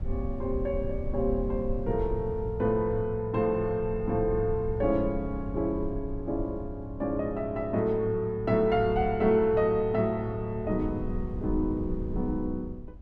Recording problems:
low-frequency rumble; below 76 Hz, SNR 11 dB

